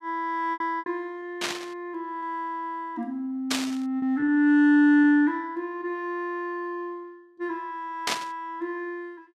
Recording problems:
lost packets; 4% of the sound replaced, filled with repeated pitch periods
burst of static; at 1.5 s, at 3.5 s and at 8 s; peak +4 dB vs average level

